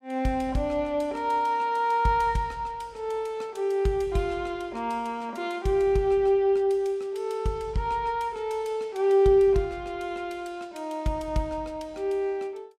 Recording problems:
none

